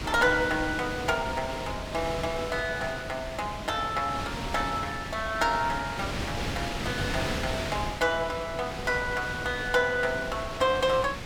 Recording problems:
wind noise; below 2.6 kHz, SNR 6 dB

